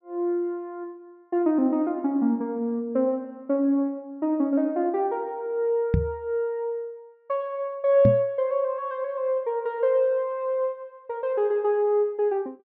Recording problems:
low-pass filter; nothing above 5.7 kHz
microphone bump; at 6 s and at 8 s; peak +7 dB vs average level

